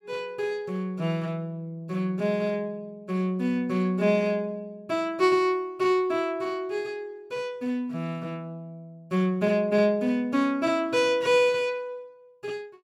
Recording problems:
none

